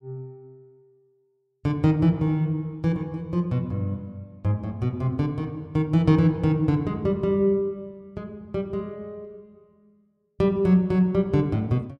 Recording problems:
none

